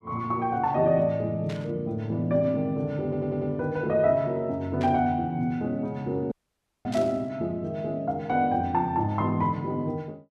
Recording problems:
burst of static; at 1.5 s, at 5 s and at 7 s; peak -9 dB vs average level
stutter; at 3 s
dropout; at 6.5 s for 0.5 s

